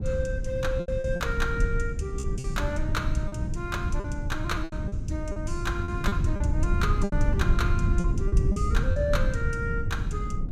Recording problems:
rumble; below 110 Hz, SNR -3 dB
lost packets; 8% of the sound replaced, filled with repeated pitch periods

